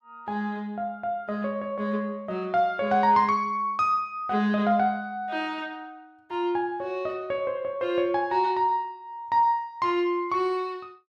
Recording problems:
none

